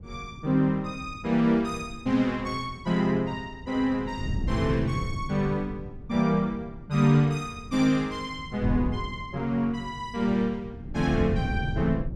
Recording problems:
wind on the microphone; below 170 Hz, SNR 9 dB

